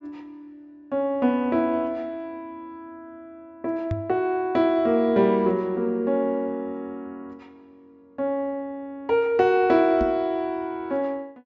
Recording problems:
treble cut off; nothing above 8 kHz
microphone bump; at 4 s and at 10 s; peak -1 dB vs average level

